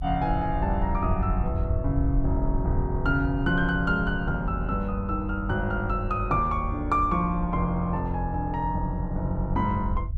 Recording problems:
low-frequency rumble; below 72 Hz, SNR 5 dB

